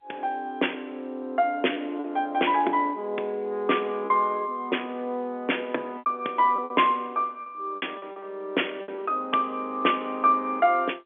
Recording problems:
phone line; 240 Hz to 3.5 kHz, G.711
lost packets; 5% of the sound replaced, filled with repeated pitch periods

